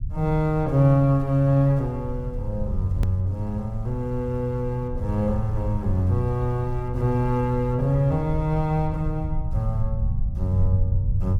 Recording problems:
low-frequency rumble; below 94 Hz, SNR 7 dB
hard cut with a click; at 3 s

